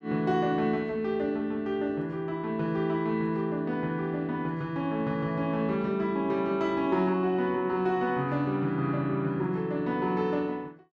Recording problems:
none

